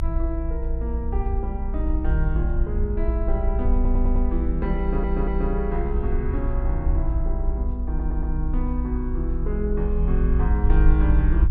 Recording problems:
rumble; below 56 Hz, strongest tone 28 Hz, SNR -4 dB
stutter; at 4 s, at 5 s and at 8 s

